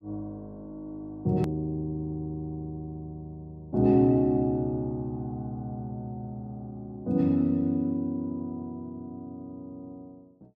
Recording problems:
hard cut with a click; at 1.5 s

